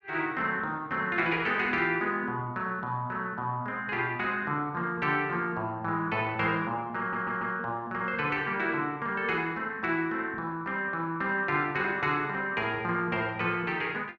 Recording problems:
audio stuttering; at 7 s

